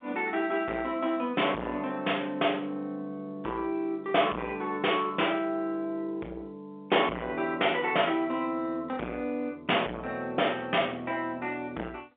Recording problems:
telephone audio; 260 Hz to 3.5 kHz, G.711
distorted audio; soft clipping, signal-to-distortion ratio 9 dB

